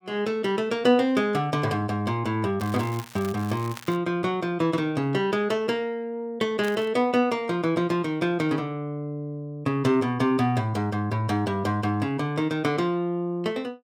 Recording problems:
crackling; from 2.5 to 4 s and at 6.5 s; loose cable, SNR 18 dB

